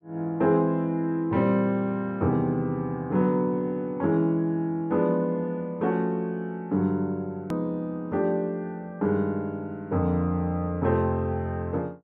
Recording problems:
click at an edit; at 7.5 s

